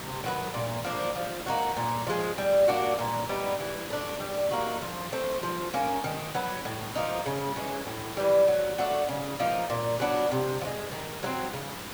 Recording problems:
electrical hum; 50 Hz, harmonics up to 1.2 kHz, SNR 23 dB
background hiss; slope -3 dB per octave, SNR 8 dB

